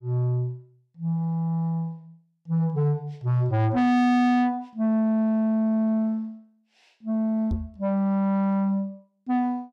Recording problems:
distorted audio; soft clipping, signal-to-distortion ratio 7 dB
microphone bump; at 7.5 s; peak 0 dB vs average level

